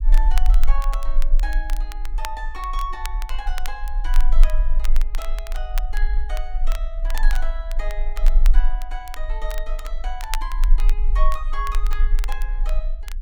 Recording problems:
rumble; below 34 Hz, strongest tone 18 Hz, SNR -9 dB
crackle; vinyl, SNR 6 dB

